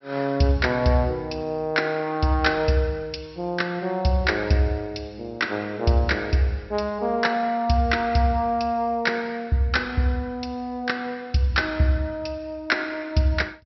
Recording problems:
low-pass filter; nothing above 5.6 kHz

